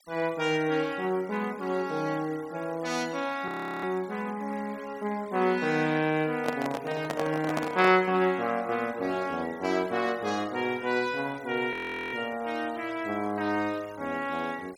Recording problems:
noise reduction artefacts; signal-to-artefact ratio 21 dB
frozen audio; at 3.5 s and at 12 s
handling noise; from 6.5 to 8 s; peak +2 dB vs average level

